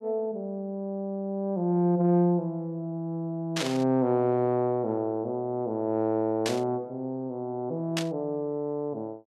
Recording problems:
static burst; at 3.5 s, at 6.5 s and at 8 s; peak +2 dB vs average level

